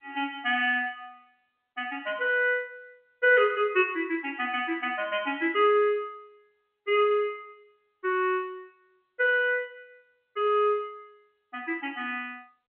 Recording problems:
telephone audio; 280 Hz to 3.2 kHz, G.711

